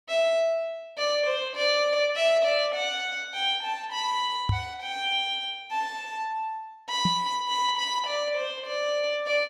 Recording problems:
microphone bump; at 4.5 s and at 7 s; peak +4 dB vs average level

